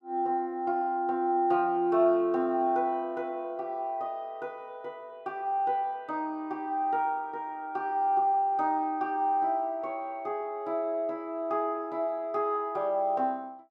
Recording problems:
none

